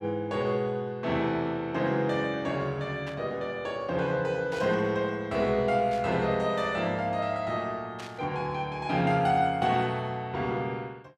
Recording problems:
static burst; 4 times, first at 3 s; peak -10 dB vs average level

